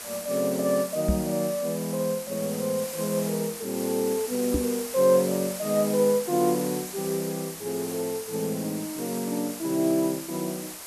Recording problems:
background hiss; slope -1 dB per octave, SNR 9 dB
microphone thump; at 1 s and at 4.5 s; peak +6 dB vs average level

